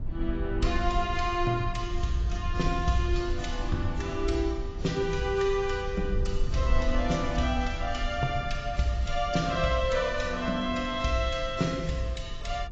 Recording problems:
codec artefacts; AAC, log-spectral distance 3 dB, nothing above 7.3 kHz
low-frequency rumble; below 64 Hz, SNR 7 dB

